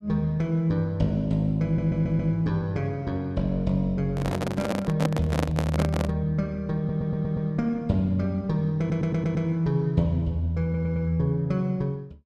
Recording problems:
stutter; 4 times, first at 1.5 s
handling noise; from 4 to 6 s; peak +3 dB vs average level

